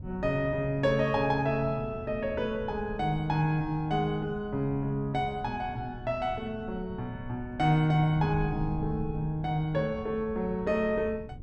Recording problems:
wind noise; below 160 Hz, SNR 14 dB

